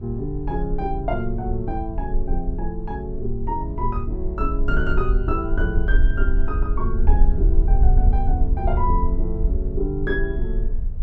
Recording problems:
low-frequency rumble; below 50 Hz, SNR -3 dB

